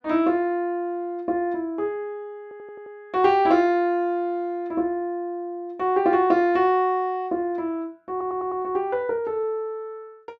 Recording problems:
stutter; at 2.5 s and at 8 s

